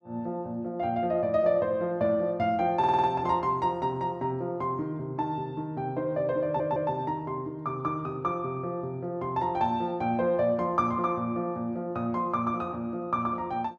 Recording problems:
audio stuttering; at 3 s and at 6.5 s

